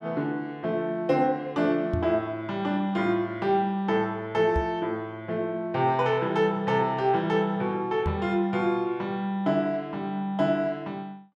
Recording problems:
microphone thump; at 2 s, at 4.5 s and at 8 s; peak +1 dB vs average level

